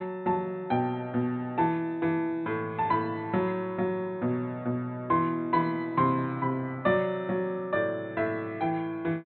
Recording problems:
treble cut off; nothing above 4.1 kHz

